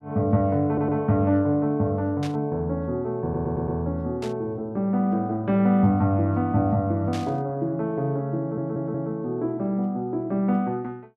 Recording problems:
stutter; at 0.5 s, at 3 s and at 8.5 s
burst of static; at 2 s, at 4 s and at 7 s; peak -9 dB vs average level

